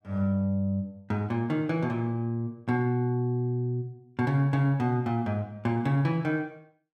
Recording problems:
none

